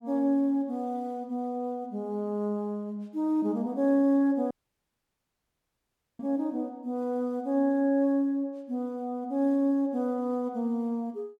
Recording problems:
audio cutting out; at 4.5 s for 1.5 s

